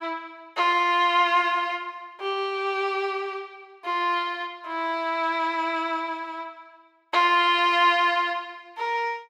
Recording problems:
none

